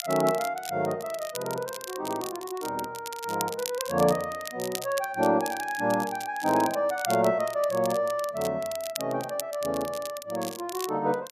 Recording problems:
crackle; vinyl, SNR 11 dB

